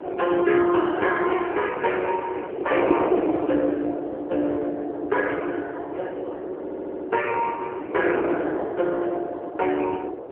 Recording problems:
phone line; 240 Hz to 2.3 kHz, AMR-NB
wind noise; below 570 Hz, SNR 5 dB
audio stuttering; at 6.5 s

